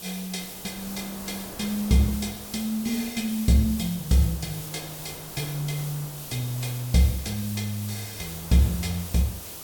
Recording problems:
background hiss; slope +3 dB per octave, SNR 10 dB
wind noise; below 1.1 kHz, SNR 18 dB

